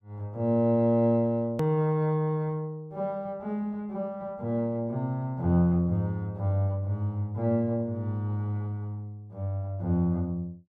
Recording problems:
edit click; at 1.5 s

